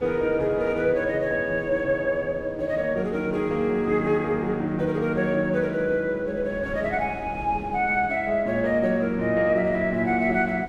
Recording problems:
wind noise; below 390 Hz, SNR 19 dB

